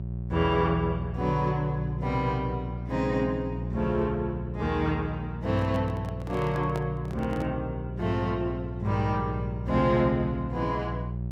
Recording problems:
hum; 60 Hz, harmonics up to 540 Hz, SNR 6 dB
handling noise; from 5.5 to 7.5 s; peak -4 dB vs average level

